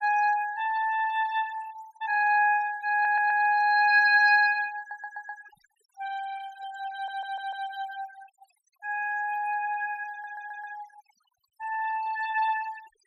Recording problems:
denoising artefacts; signal-to-artefact ratio 19 dB
audio stuttering; 4 times, first at 3 s

